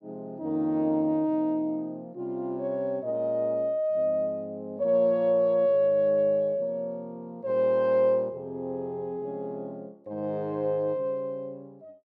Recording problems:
none

